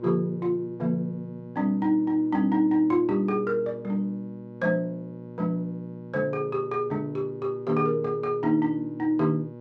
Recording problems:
hum; 60 Hz, harmonics up to 1.1 kHz, SNR 16 dB

